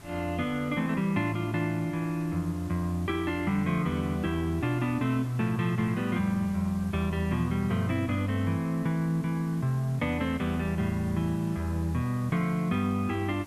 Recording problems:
background hiss; slope -4 dB per octave, SNR 20 dB

